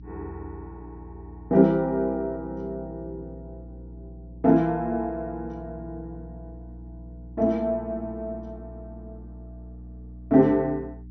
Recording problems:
treble cut off; nothing above 6 kHz
hum; 60 Hz, harmonics up to 300 Hz, SNR 18 dB

